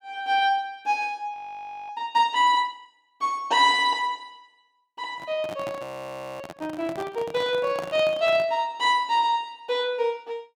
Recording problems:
frozen audio; at 1.5 s for 0.5 s and at 6 s for 0.5 s
microphone handling noise; from 5 to 8.5 s; peak -5 dB vs average level

